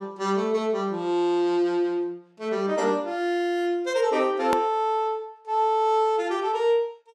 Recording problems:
hard cut with a click; at 4.5 s

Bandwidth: 13 kHz